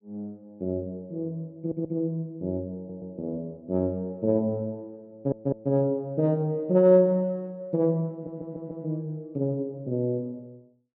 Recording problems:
stutter; 4 times, first at 1.5 s

